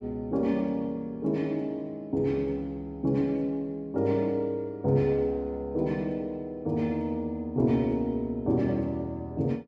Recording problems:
none

